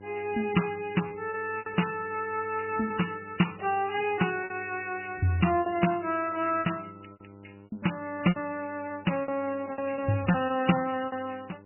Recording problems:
codec artefacts; MP3, log-spectral distance 7 dB, nothing above 2.9 kHz
hum; 50 Hz, harmonics up to 1.4 kHz, SNR 21 dB
lost packets; 9% of the sound replaced, filled with repeated pitch periods

